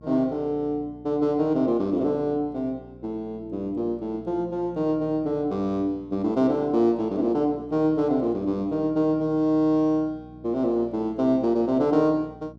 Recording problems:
hum; 60 Hz, harmonics up to 660 Hz, SNR 22 dB

